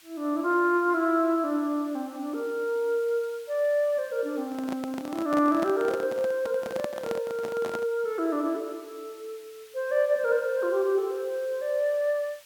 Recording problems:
hiss; SNR 24 dB
microphone handling noise; from 4.5 to 8 s; peak -3 dB vs average level

